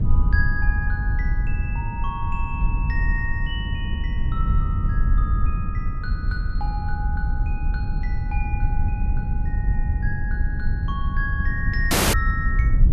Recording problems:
hum; 50 Hz, harmonics up to 800 Hz, SNR 13 dB
rumble; below 110 Hz, SNR 3 dB
wind noise; below 78 Hz, SNR -7 dB
audio cutting out; at 12 s

